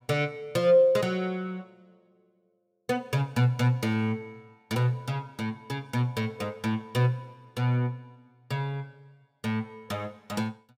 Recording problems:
none

